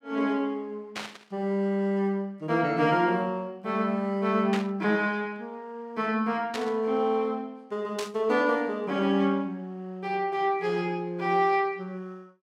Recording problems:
burst of static; 4 times, first at 1 s; peak -2 dB vs average level

